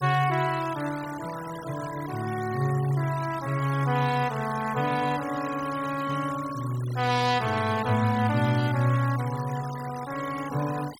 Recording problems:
denoising artefacts; signal-to-artefact ratio 14 dB

